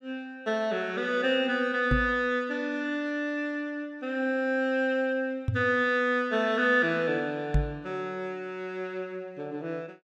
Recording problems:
knock on the microphone; at 2 s, at 5.5 s and at 7.5 s; peak +6 dB vs average level

